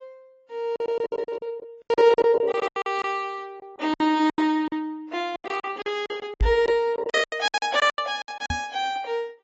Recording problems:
lossy compression; AAC, log-spectral distance 2 dB, nothing above 7.6 kHz
packet loss; 19% of the sound replaced, filled with silence
knock on the microphone; at 6.5 s and at 8.5 s; peak +4 dB vs average level

